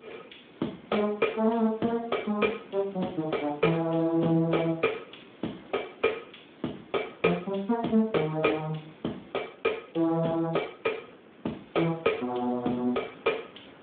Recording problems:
telephone audio; 170 Hz to 3.5 kHz, Speex
background hiss; SNR 22 dB

